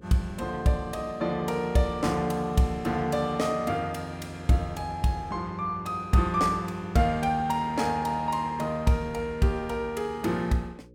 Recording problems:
hum; 60 Hz, harmonics up to 540 Hz, SNR 25 dB

